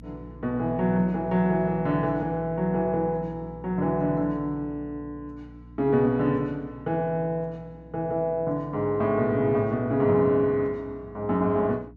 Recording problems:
hum; 60 Hz, harmonics up to 300 Hz, SNR 20 dB

